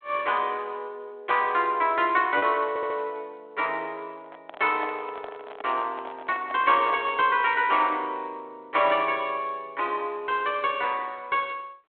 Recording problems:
telephone audio; 280 Hz to 3.9 kHz, G.726
lost packets; 0.3% of the sound replaced, filled with repeated pitch periods
audio stuttering; at 2.5 s
microphone handling noise; from 4 to 7 s; peak -8 dB vs average level

